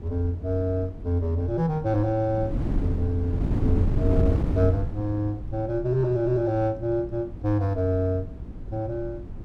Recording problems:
wind noise; below 190 Hz, SNR 5 dB

